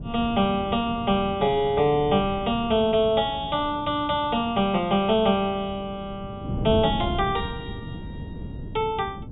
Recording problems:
treble missing; nothing above 4 kHz
wind noise; below 230 Hz, SNR 12 dB

